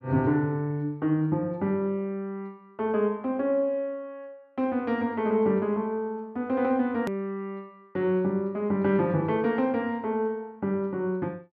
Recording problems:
click at an edit; at 7 s

